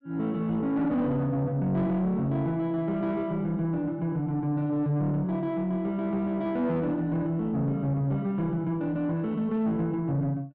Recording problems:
distortion; soft clipping, signal-to-distortion ratio 11 dB

